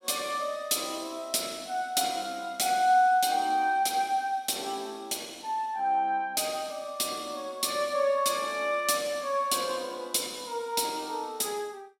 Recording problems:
none

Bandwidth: 16.5 kHz